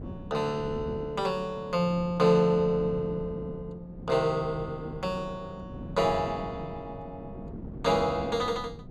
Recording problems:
wind on the microphone; below 280 Hz, SNR 13 dB

